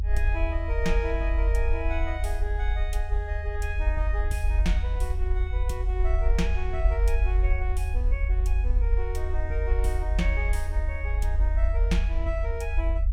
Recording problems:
rumble; below 56 Hz, strongest tone 46 Hz, SNR -6 dB

